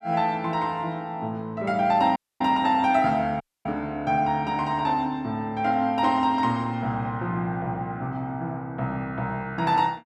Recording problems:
dropout; at 2 s and at 3.5 s

